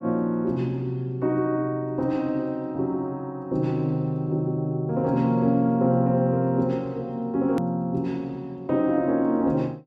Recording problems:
edit click; at 7.5 s

